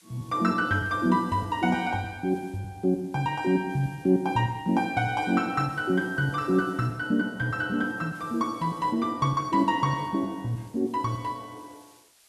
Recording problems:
background hiss; slope +2 dB per octave, SNR 29 dB

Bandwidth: 12.5 kHz